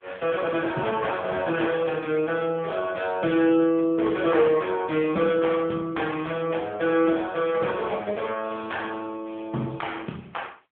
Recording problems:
phone line; 170 Hz to 3.5 kHz, AMR-NB

